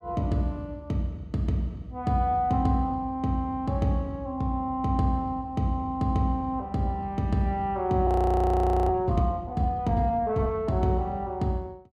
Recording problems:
frozen audio; at 8 s for 1 s

